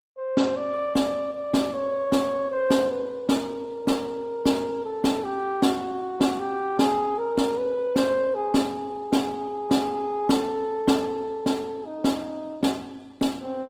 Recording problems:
lossy codec; Opus, log-spectral distance 3 dB, nothing above 19 kHz

